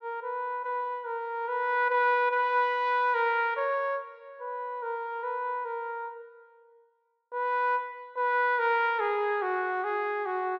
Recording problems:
none

